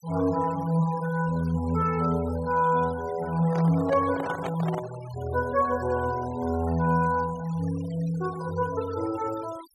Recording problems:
denoising artefacts; signal-to-artefact ratio 19 dB
handling noise; from 3.5 to 5 s; peak -3 dB vs average level

